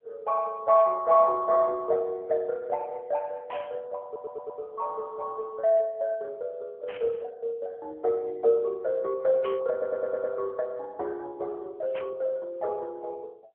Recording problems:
phone line; 320 Hz to 2.3 kHz, AMR-NB
static burst; 4 times, first at 3.5 s; peak -9 dB vs average level
audio stuttering; at 4 s and at 9.5 s

